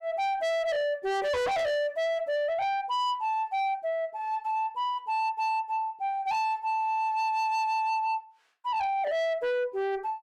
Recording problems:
distorted audio; soft clipping, signal-to-distortion ratio 8 dB

